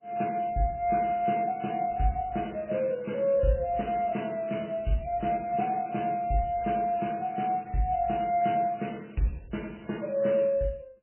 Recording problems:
lossy codec; MP3, log-spectral distance 5 dB, nothing above 2.8 kHz

